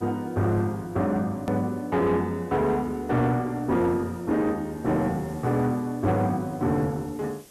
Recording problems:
distorted audio; soft clipping, signal-to-distortion ratio 12 dB
background hiss; SNR 27 dB
click at an edit; at 1.5 s

